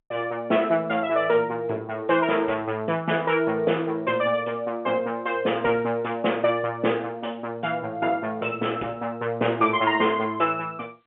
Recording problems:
phone line; 280 Hz to 3.3 kHz, G.711

